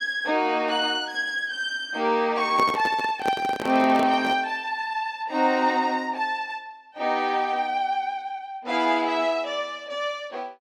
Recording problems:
microphone handling noise; from 2.5 to 4.5 s; peak +1 dB vs average level

